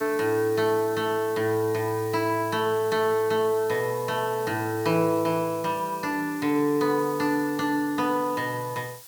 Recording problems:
hiss; slope +2 dB per octave, SNR 17 dB

